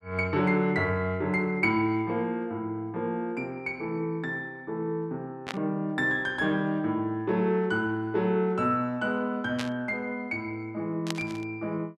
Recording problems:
static burst; at 5.5 s, at 9.5 s and at 11 s; peak 0 dB vs average level

